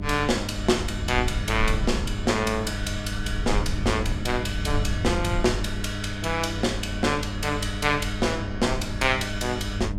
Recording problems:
hum; 50 Hz, harmonics up to 1 kHz, SNR 8 dB
rumble; below 84 Hz, SNR 7 dB

